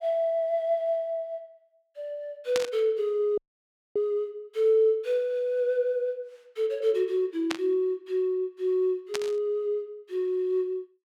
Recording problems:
static burst; at 2.5 s, at 7.5 s and at 9 s; peak +1 dB vs average level
audio cutting out; at 3.5 s for 0.5 s

